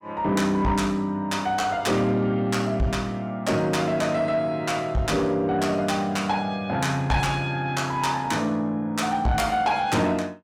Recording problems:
distortion; soft clipping, signal-to-distortion ratio 11 dB

